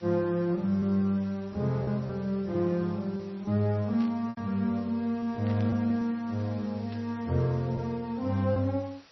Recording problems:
lossy codec; MP3, log-spectral distance 3 dB, nothing above 5.2 kHz
background hiss; slope -1 dB per octave, SNR 26 dB
lost packets; 3% of the sound replaced, filled with repeated pitch periods
burst of static; at 4 s, at 5.5 s and at 7 s; peak -14 dB vs average level

